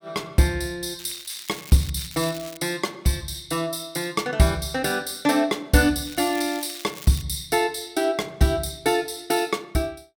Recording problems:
crackling; at 1 s, at 2 s and from 6 to 7 s; loose cable, SNR 15 dB

